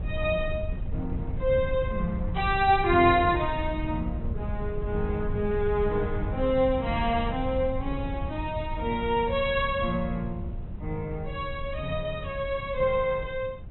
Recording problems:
treble cut off; nothing above 4 kHz
wind on the microphone; below 110 Hz, SNR 7 dB

